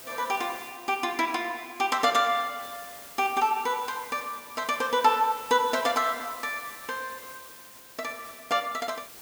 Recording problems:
background hiss; slope -1 dB per octave, SNR 16 dB

